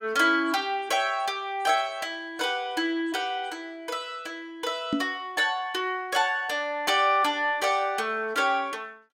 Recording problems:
microphone bump; at 5 s; peak +3 dB vs average level

